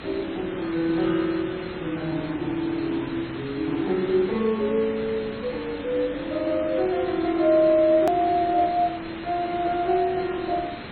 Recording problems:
lossy codec; MP3, then MP2, log-spectral distance 9 dB, nothing above 18.9 kHz
hiss; SNR 13 dB
hard cut with a click; at 8 s

